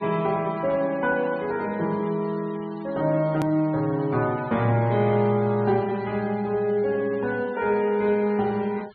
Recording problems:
treble missing; nothing above 4.4 kHz
noise reduction artefacts; signal-to-artefact ratio 23 dB
click at an edit; at 3.5 s

